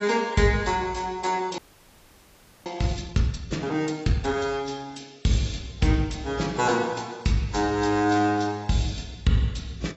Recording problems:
codec artefacts; AAC, log-spectral distance 4 dB, nothing above 7.6 kHz
audio freezing; at 1.5 s for 1 s

